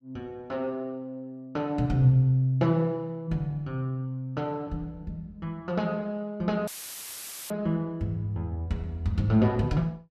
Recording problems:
dropout; at 6.5 s for 1 s; filled with static

